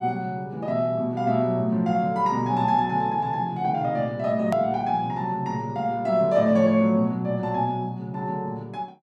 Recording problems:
click at an edit; at 4.5 s

